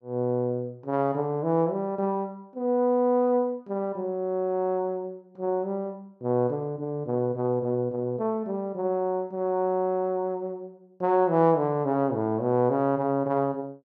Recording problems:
none

